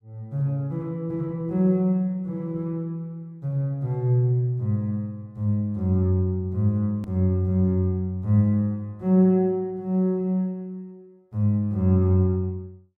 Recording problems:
hard cut with a click; at 7 s

